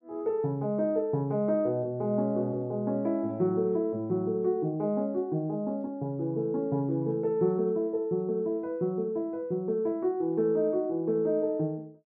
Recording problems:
none

